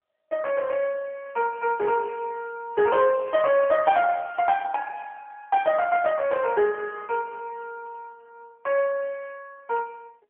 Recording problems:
telephone audio; 190 Hz to 2.3 kHz, AMR-NB

